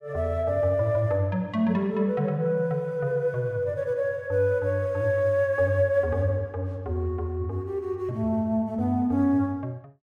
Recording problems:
none

